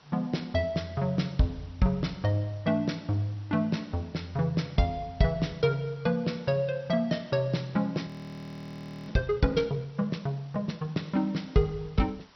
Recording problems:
lossy codec; MP2, log-spectral distance 4 dB, nothing above 5.7 kHz
background hiss; SNR 28 dB
frozen audio; at 8 s for 1 s

